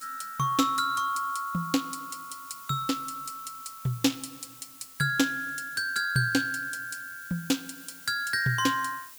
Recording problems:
background hiss; slope +1 dB per octave, SNR 17 dB

